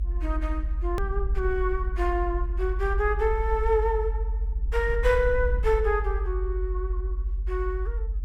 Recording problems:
low-frequency rumble; below 60 Hz, strongest tone 46 Hz, SNR 1 dB
hard cut with a click; at 1 s

